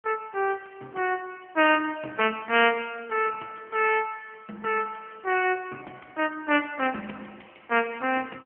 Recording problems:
phone line; 240 Hz to 3.1 kHz, AMR-NB

